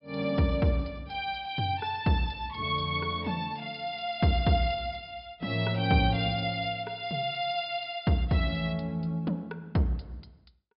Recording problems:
treble missing; nothing above 5.5 kHz

